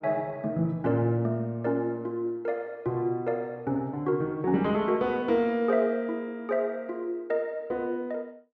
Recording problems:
none

